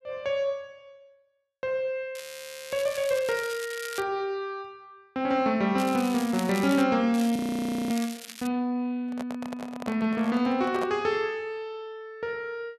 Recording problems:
crackling; from 2 to 4 s, from 6 to 7 s and from 7 to 8.5 s; loose cable, SNR 13 dB
audio freezing; at 2 s for 0.5 s and at 7.5 s for 0.5 s
handling noise; from 9 to 11 s; peak -2 dB vs average level

